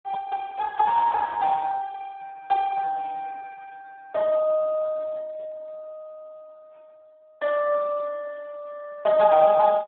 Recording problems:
telephone audio; 280 Hz to 3.1 kHz, Speex

